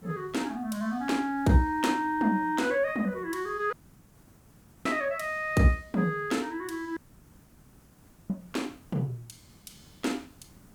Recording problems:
hiss; SNR 27 dB
audio cutting out; at 3.5 s for 1 s and at 7 s for 1.5 s

